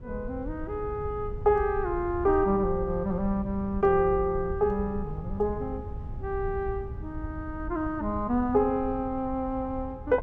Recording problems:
rumble; below 100 Hz, SNR 11 dB

